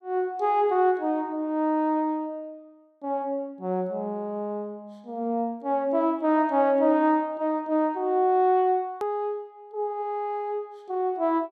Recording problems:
hard cut with a click; at 9 s

